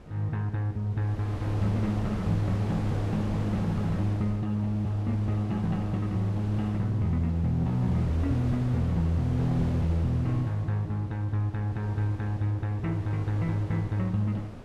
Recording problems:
wind on the microphone; below 540 Hz, SNR 11 dB

